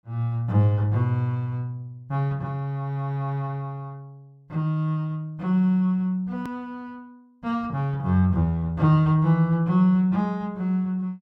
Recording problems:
click at an edit; at 6.5 s

